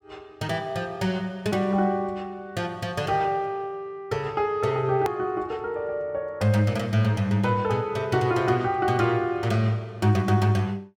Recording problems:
click at an edit; at 5 s

